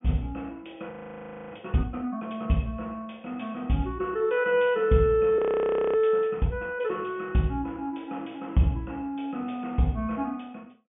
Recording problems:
low-pass filter; nothing above 3.3 kHz
audio freezing; at 1 s for 0.5 s and at 5.5 s for 0.5 s

